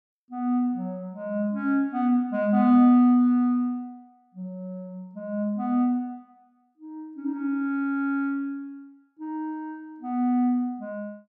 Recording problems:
none

